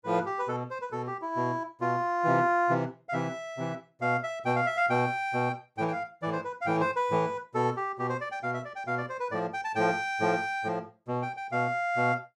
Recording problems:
none

